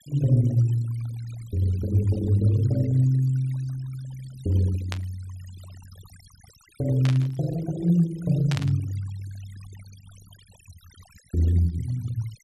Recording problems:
denoising artefacts; signal-to-artefact ratio 23 dB
burst of static; at 5 s, at 7 s and at 8.5 s; peak -4 dB vs average level

